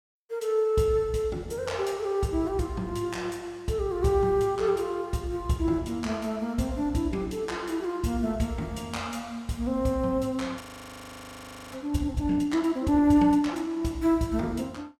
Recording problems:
audio freezing; at 11 s for 1 s

